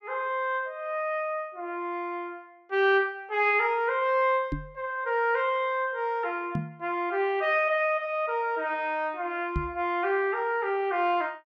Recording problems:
microphone thump; at 4.5 s, at 6.5 s and at 9.5 s; peak +1 dB vs average level

